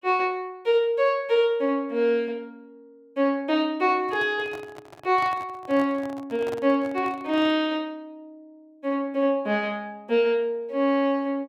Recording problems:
handling noise; from 4 to 7.5 s; peak -8 dB vs average level

